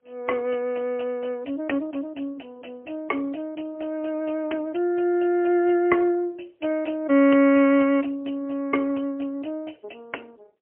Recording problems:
telephone audio; 240 Hz to 3.1 kHz, AMR-NB, then MP3

